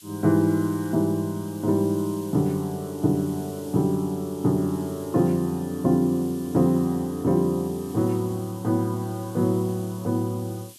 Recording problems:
hiss; SNR 21 dB

